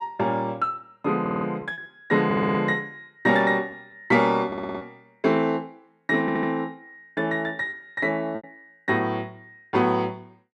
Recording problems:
lost packets; 3% of the sound replaced, filled with repeated pitch periods
audio stuttering; 4 times, first at 1 s

